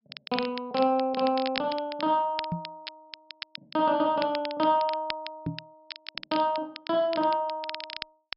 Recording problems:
treble missing; nothing above 5.5 kHz
crackling; vinyl, SNR 12 dB
microphone bump; at 2.5 s and at 5.5 s; peak -1 dB vs average level

